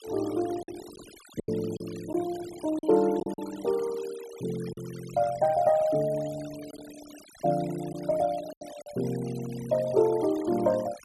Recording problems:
noise reduction artefacts; signal-to-artefact ratio 19 dB
lost packets; 5% of the sound replaced, filled with silence

